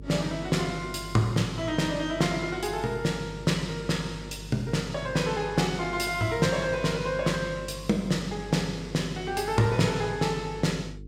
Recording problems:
hum; 50 Hz, harmonics up to 450 Hz, SNR 15 dB

